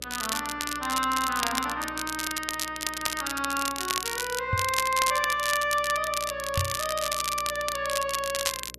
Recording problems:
electrical hum; 60 Hz, harmonics up to 600 Hz, SNR 21 dB
crackling; vinyl, SNR 3 dB
microphone thump; at 4.5 s and at 6.5 s; peak +4 dB vs average level

